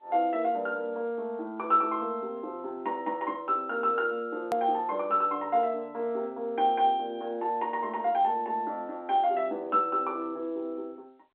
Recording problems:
telephone audio; 280 Hz to 3.6 kHz, G.711
edit click; at 4.5 s

